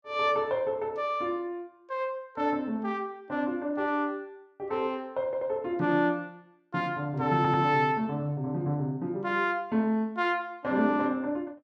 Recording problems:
stutter; at 5.5 s and at 7.5 s

